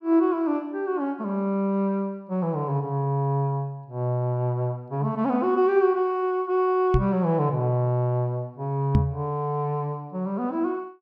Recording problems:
microphone thump; at 7 s and at 9 s; peak +6 dB vs average level

